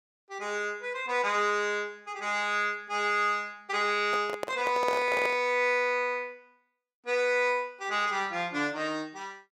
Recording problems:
handling noise; from 4 to 5.5 s; peak -1 dB vs average level

